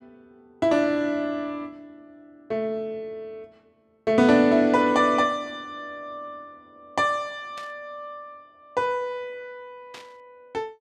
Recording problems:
burst of static; at 7.5 s and at 10 s; peak -13 dB vs average level

